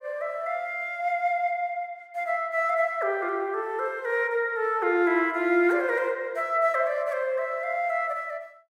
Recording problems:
none

